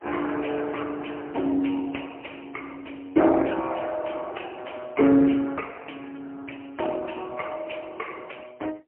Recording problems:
telephone audio; 240 Hz to 3 kHz, AMR-NB, then MP3

